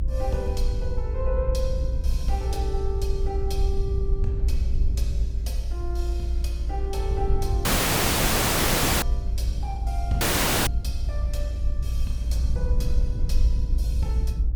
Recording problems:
low-frequency rumble; below 60 Hz, SNR -7 dB
audio cutting out; at 7.5 s for 1.5 s and at 10 s

